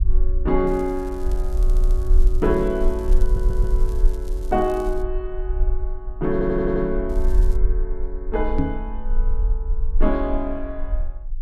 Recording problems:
rumble; below 44 Hz, strongest tone 20 Hz, SNR 0 dB
crackle; from 0.5 to 5 s and at 7 s; loose cable, SNR 24 dB
audio stuttering; at 1.5 s, at 3 s and at 6.5 s
microphone bump; at 8.5 s; peak +7 dB vs average level

